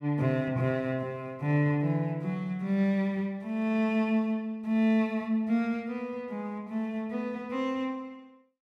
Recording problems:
none

